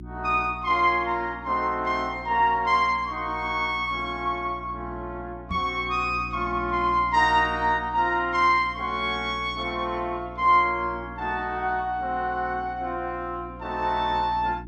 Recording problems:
hum; 60 Hz, harmonics up to 360 Hz, SNR 17 dB
knock on the microphone; at 5.5 s; peak -4 dB vs average level

